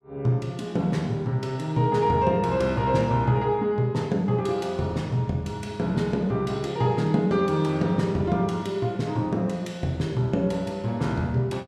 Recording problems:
none

